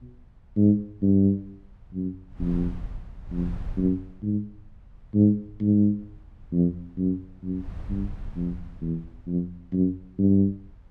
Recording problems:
wind on the microphone; below 88 Hz, SNR 16 dB

